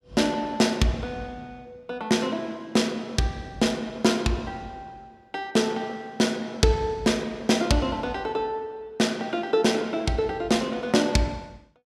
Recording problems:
none

